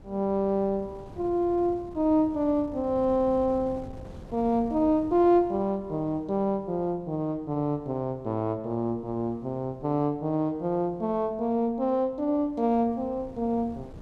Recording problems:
wind on the microphone; below 310 Hz, SNR 21 dB

